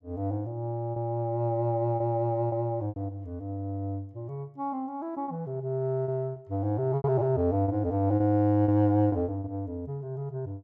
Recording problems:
packet loss; 6% of the sound replaced, filled with repeated pitch periods

